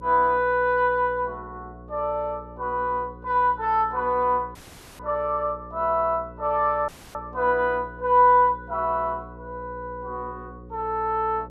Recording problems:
electrical hum; 60 Hz, harmonics up to 540 Hz, SNR 20 dB
audio cutting out; at 4.5 s and at 7 s

